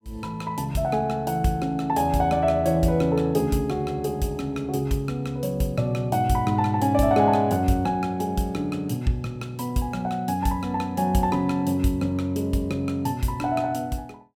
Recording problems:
none

